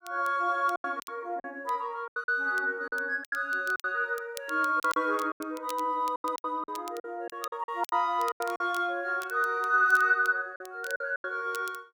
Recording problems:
crackle; vinyl, SNR 20 dB
packet loss; 12% of the sound replaced, filled with silence

